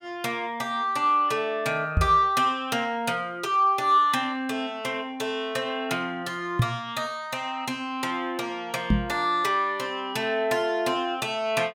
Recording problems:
microphone thump; at 2 s, at 6.5 s and at 9 s; peak +7 dB vs average level

